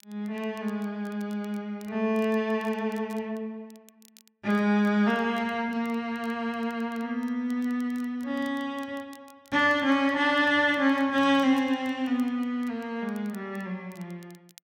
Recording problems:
crackle; vinyl, SNR 30 dB

